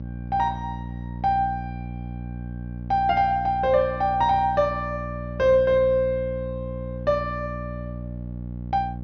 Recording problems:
treble missing; nothing above 6.3 kHz
mains hum; 60 Hz, harmonics up to 600 Hz, SNR 10 dB

